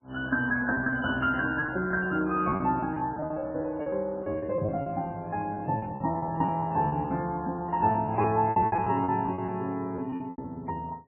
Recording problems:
lossy codec; MP3, then MP3, log-spectral distance 2 dB, nothing above 2.5 kHz
lost packets; 15% of the sound replaced, filled with repeated pitch periods

